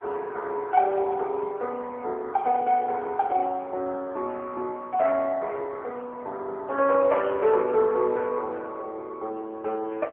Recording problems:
phone line; 320 Hz to 3 kHz, AMR-NB

